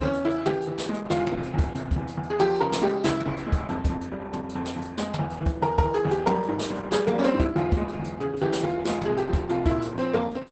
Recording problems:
lossy codec; Opus, log-spectral distance 4 dB, nothing above 8.2 kHz

